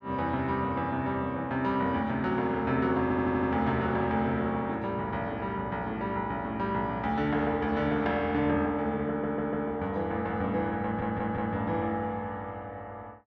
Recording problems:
audio stuttering; at 3 s, at 9 s and at 11 s

